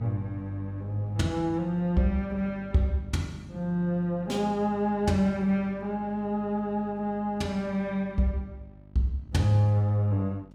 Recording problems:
hum; 50 Hz, harmonics up to 950 Hz, SNR 20 dB

